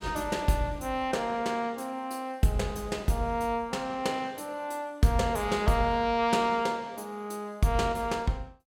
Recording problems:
none

